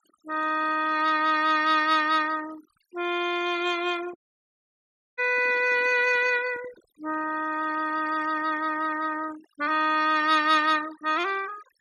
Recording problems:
noise reduction artefacts; signal-to-artefact ratio 19 dB
microphone handling noise; from 4 to 7 s; peak -21 dB vs average level
audio cutting out; at 4 s for 1 s

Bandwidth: 14 kHz